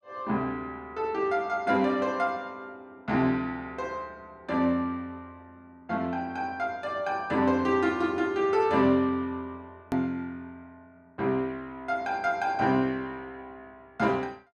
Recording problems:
hard cut with a click; at 10 s

